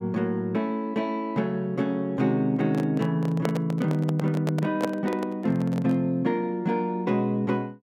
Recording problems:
microphone handling noise; from 2.5 to 6 s; peak +2 dB vs average level

